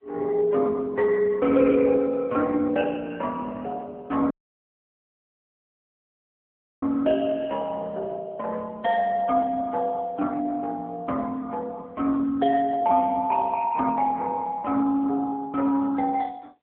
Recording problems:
phone line; 240 Hz to 2.3 kHz, AMR-NB
audio cutting out; at 4.5 s for 2.5 s

